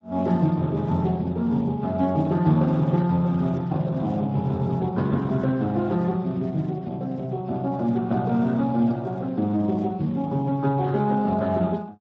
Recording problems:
codec artefacts; Speex, log-spectral distance 2 dB

